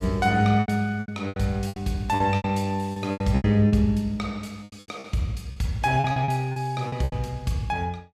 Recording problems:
lost packets; 15% of the sound replaced, filled with repeated pitch periods

